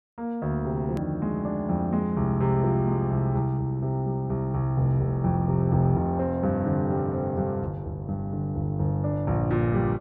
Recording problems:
hard cut with a click; at 1 s

